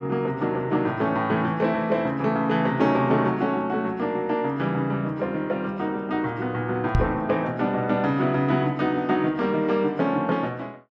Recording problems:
microphone thump; at 7 s; peak +6 dB vs average level

